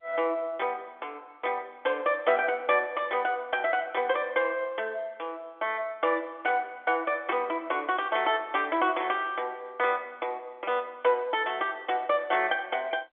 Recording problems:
telephone audio; 220 Hz to 3.5 kHz, G.711

